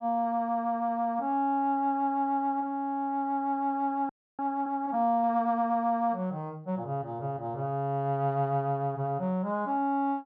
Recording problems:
frozen audio; at 4 s

